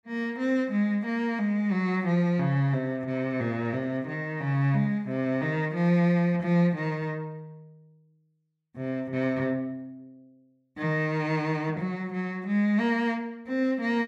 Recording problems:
none

